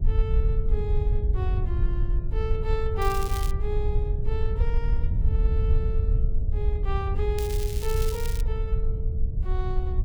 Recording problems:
hum; 60 Hz, harmonics up to 660 Hz, SNR 13 dB
rumble; below 70 Hz, SNR -7 dB
crackle; at 3 s and from 7.5 to 8.5 s; loose cable, SNR 5 dB

